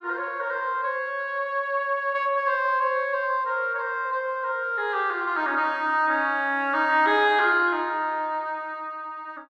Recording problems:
none

